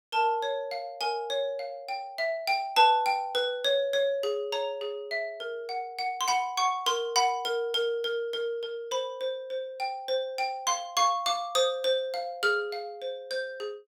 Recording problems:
none

